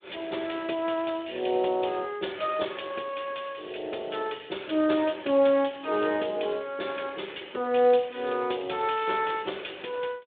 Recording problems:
phone line; 280 Hz to 3.6 kHz, Speex

